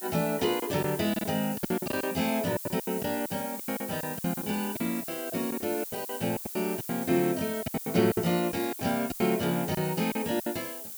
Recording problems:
background hiss; SNR 7 dB
lost packets; 15% of the sound replaced, filled with silence

